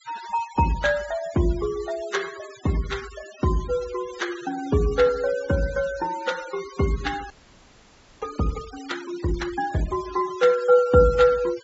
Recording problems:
low-pass filter; nothing above 8 kHz
noise reduction artefacts; signal-to-artefact ratio 17 dB
audio freezing; at 7.5 s for 1 s

